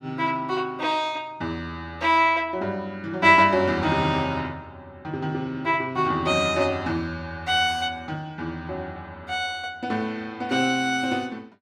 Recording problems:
none

